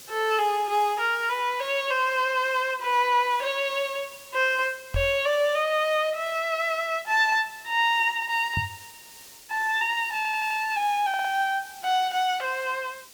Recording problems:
background hiss; SNR 21 dB
microphone bump; at 5 s and at 8.5 s; peak -1 dB vs average level
stutter; at 10 s and at 11 s

